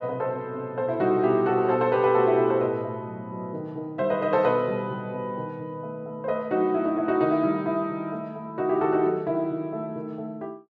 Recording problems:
none

